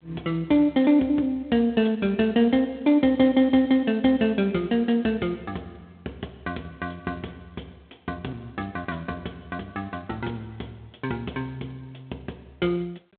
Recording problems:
telephone audio; 190 Hz to 3.7 kHz, G.726

